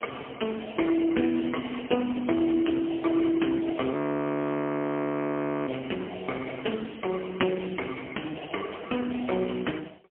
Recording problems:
telephone audio; 220 Hz to 3.2 kHz, AMR-NB, then MP3
audio freezing; at 4 s for 1.5 s

